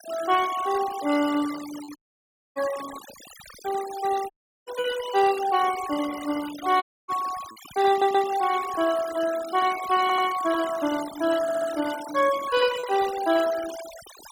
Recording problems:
denoising artefacts; signal-to-artefact ratio 14 dB
packet loss; 1.3% of the sound replaced, filled with repeated pitch periods
dropout; at 2 s for 0.5 s, at 4.5 s and at 7 s
audio stuttering; at 8 s, at 10 s and at 11 s

